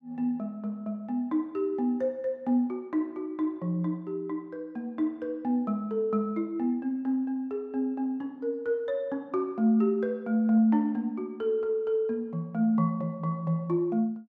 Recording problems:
none

